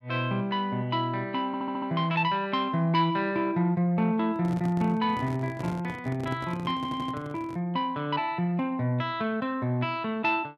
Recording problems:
audio stuttering; at 1.5 s and at 7 s
handling noise; from 4.5 to 7.5 s; peak -5 dB vs average level

